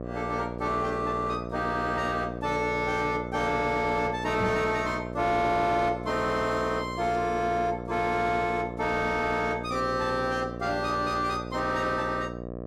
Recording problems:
distortion; soft clipping, signal-to-distortion ratio 11 dB
hum; 60 Hz, harmonics up to 1.3 kHz, SNR 8 dB
knock on the microphone; at 4.5 s; peak +3 dB vs average level

